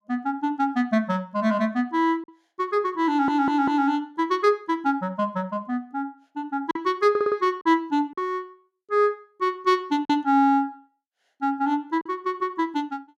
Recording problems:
packet loss; 2% of the sound replaced, filled with silence
stutter; at 3 s and at 7 s

